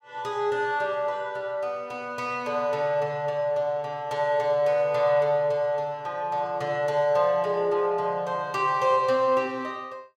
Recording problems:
none

